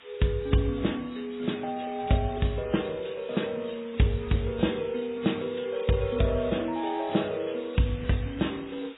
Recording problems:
lossy codec; MP3, then AAC, log-spectral distance 13 dB, nothing above 3.8 kHz
background hiss; SNR 19 dB

